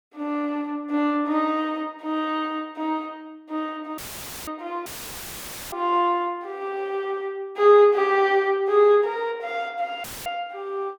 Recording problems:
audio cutting out; at 4 s, at 5 s for 1 s and at 10 s; filled with static

